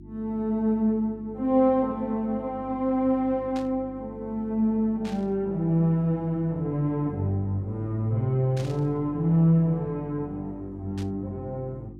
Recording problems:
electrical hum; 50 Hz, harmonics up to 350 Hz, SNR 18 dB
burst of static; 4 times, first at 3.5 s; peak -12 dB vs average level

